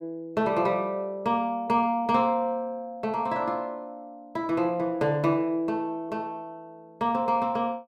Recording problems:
none

